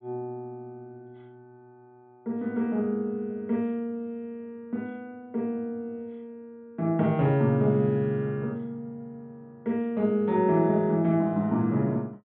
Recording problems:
treble missing; nothing above 4 kHz

